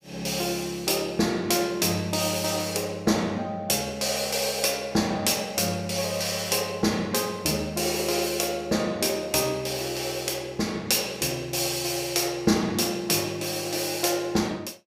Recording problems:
none

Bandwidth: 15.5 kHz